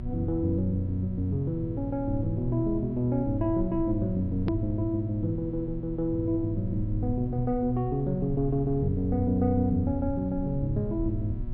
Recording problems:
treble cut off; nothing above 5.5 kHz
hum; 60 Hz, harmonics up to 720 Hz, SNR 12 dB
low-frequency rumble; below 82 Hz, SNR 11 dB
edit click; at 4.5 s

